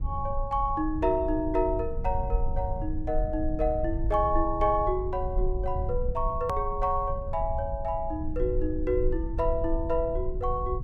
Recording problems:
rumble; below 64 Hz, strongest tone 22 Hz, SNR 5 dB
edit click; at 6.5 s

